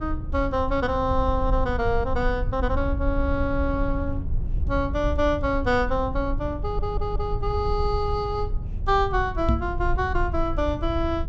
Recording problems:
treble missing; nothing above 8 kHz
rumble; below 76 Hz, SNR 4 dB
audio stuttering; at 6.5 s
knock on the microphone; at 9.5 s; peak +7 dB vs average level

